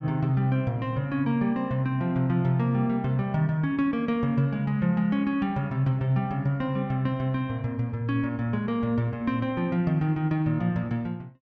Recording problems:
none

